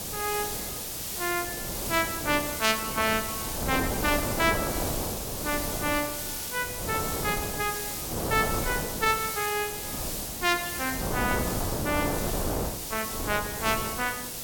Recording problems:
background hiss; slope +2 dB per octave, SNR 3 dB
wind noise; below 670 Hz, SNR 6 dB

